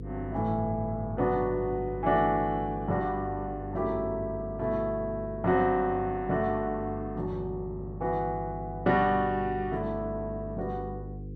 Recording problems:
electrical hum; 50 Hz, harmonics up to 500 Hz, SNR 10 dB

